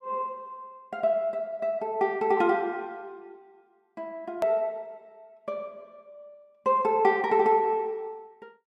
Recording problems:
click at an edit; at 4.5 s

